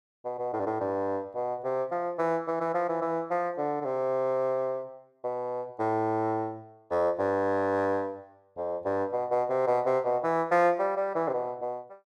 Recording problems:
none

